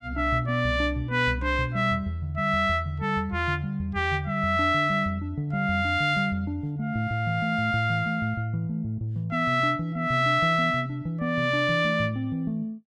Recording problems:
none

